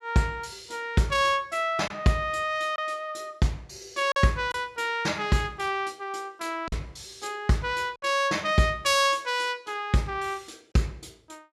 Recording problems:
lost packets; 1.7% of the sound replaced, filled with silence

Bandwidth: 15 kHz